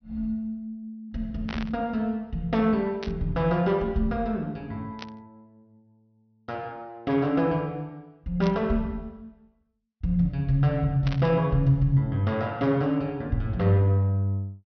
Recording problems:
low-pass filter; nothing above 6 kHz
static burst; 5 times, first at 1.5 s; peak -6 dB vs average level

